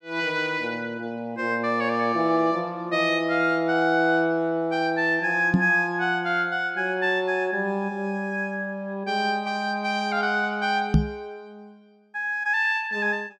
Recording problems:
knock on the microphone; at 5.5 s and at 11 s; peak +8 dB vs average level

